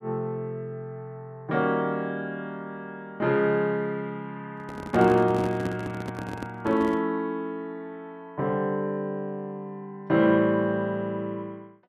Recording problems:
handling noise; from 4.5 to 7 s; peak -2 dB vs average level

